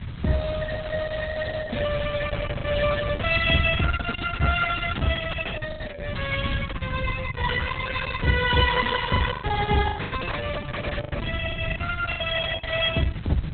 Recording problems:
lossy compression; Opus, log-spectral distance 8 dB, nothing above 3.6 kHz
background hiss; SNR 22 dB
wind noise; below 140 Hz, SNR 9 dB
lost packets; 5% of the sound replaced, filled with the last packet

